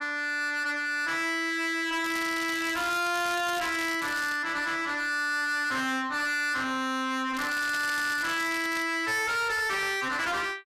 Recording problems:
distorted audio; soft clipping, signal-to-distortion ratio 6 dB
crackle; from 2 to 4.5 s and from 7.5 to 9 s; loose cable, SNR 11 dB

